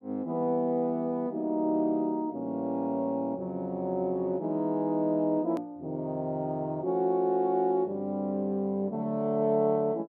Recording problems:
click at an edit; at 5.5 s

